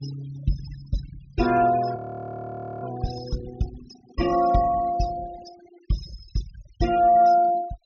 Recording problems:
treble missing; nothing above 6.6 kHz
noise reduction artefacts; signal-to-artefact ratio 16 dB
frozen audio; at 2 s for 1 s

